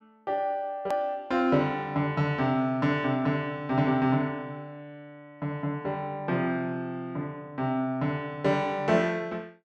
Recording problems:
hard cut with a click; at 1 s

